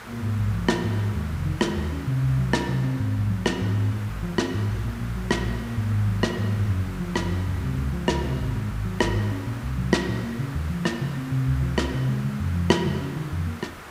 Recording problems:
hiss; SNR 15 dB

